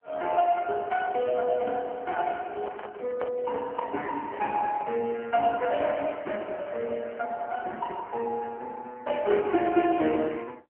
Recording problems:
telephone audio; 280 Hz to 2.9 kHz, AMR-NB
microphone handling noise; from 2.5 to 5 s; peak -6 dB vs average level

